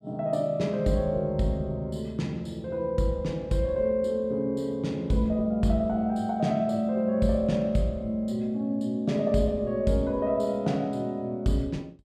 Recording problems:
none

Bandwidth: 14 kHz